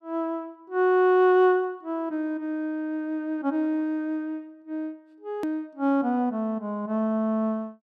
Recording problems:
click at an edit; at 5.5 s

